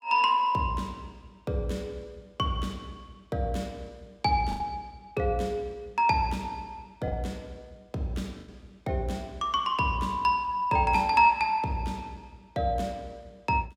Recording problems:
packet loss; 1.6% of the sound replaced, filled with the last packet

